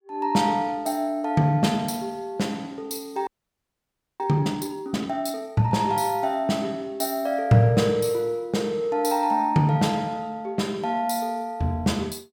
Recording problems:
audio freezing; at 3.5 s for 1 s

